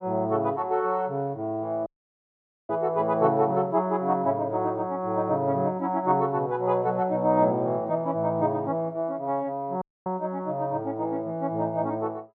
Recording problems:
dropout; at 2 s for 1 s and at 10 s

